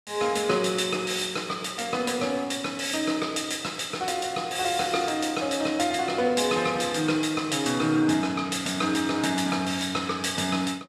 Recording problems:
none

